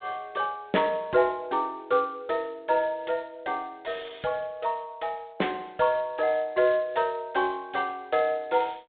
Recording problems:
phone line; 240 Hz to 3.6 kHz, G.726

